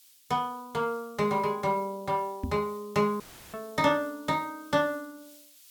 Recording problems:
hiss; slope +6 dB per octave, SNR 24 dB
knock on the microphone; at 2.5 s; peak 0 dB vs average level
audio cutting out; at 3 s; filled with static

